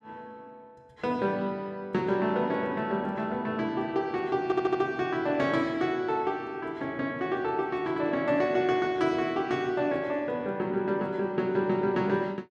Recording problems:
audio stuttering; at 4.5 s

